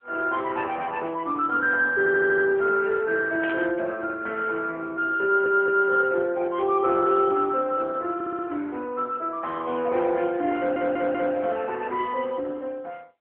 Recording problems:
phone line; 300 Hz to 3.1 kHz, AMR-NB
audio stuttering; 4 times, first at 2 s
static burst; at 3.5 s; peak -7 dB vs average level

